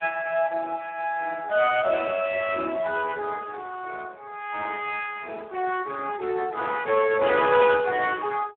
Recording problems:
telephone audio; 260 Hz to 2.9 kHz, Speex

